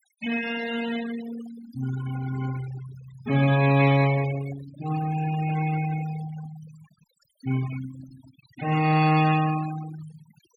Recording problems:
denoising artefacts; signal-to-artefact ratio 13 dB

